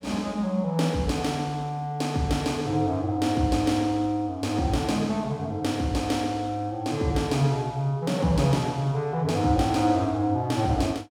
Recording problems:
none

